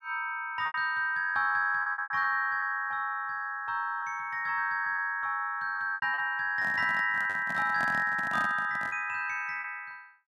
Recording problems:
packet loss; 7% of the sound replaced, filled with repeated pitch periods
handling noise; from 6.5 to 9 s; peak -5 dB vs average level

